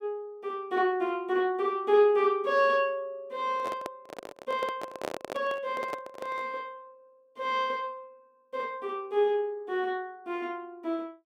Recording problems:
microphone handling noise; from 3.5 to 6.5 s; peak -1 dB vs average level

